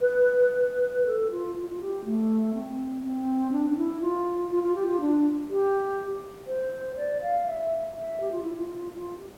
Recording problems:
hiss; slope -7 dB per octave, SNR 22 dB

